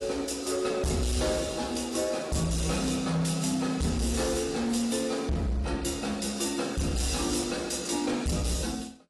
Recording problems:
lossy codec; AAC, log-spectral distance 6 dB, nothing above 11.3 kHz
distortion; hard clipping, signal-to-distortion ratio 8 dB

